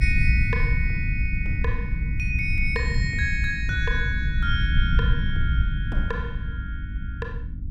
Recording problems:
electrical hum; 50 Hz, harmonics up to 300 Hz, SNR 15 dB
rumble; below 100 Hz, SNR -2 dB

